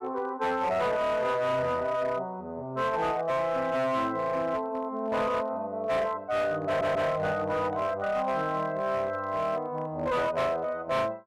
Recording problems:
distortion; hard clipping, signal-to-distortion ratio 11 dB
stutter; at 6.5 s

